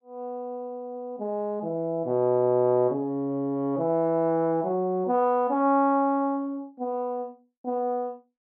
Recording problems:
none

